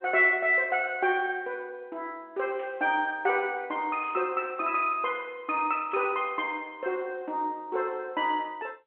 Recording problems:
telephone audio; 240 Hz to 3.3 kHz, G.711
static burst; at 2.5 s, at 4 s and at 6 s; peak -17 dB vs average level

